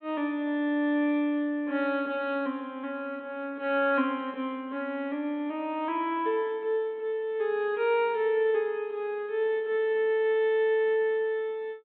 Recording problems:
treble cut off; nothing above 4 kHz

